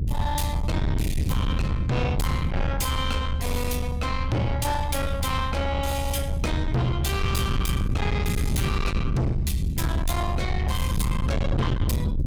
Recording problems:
distortion; soft clipping, signal-to-distortion ratio 6 dB
low-frequency rumble; below 150 Hz, SNR -1 dB

